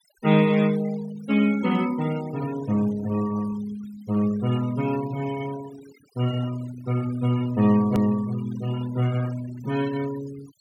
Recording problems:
denoising artefacts; signal-to-artefact ratio 17 dB
hard cut with a click; at 8 s

